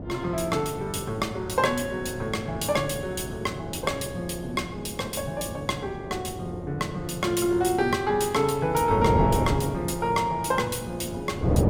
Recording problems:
wind on the microphone; below 420 Hz, SNR 7 dB

